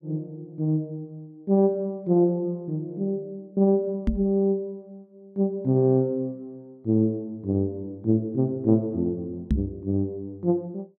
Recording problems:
knock on the microphone; at 4 s and at 9.5 s; peak +5 dB vs average level

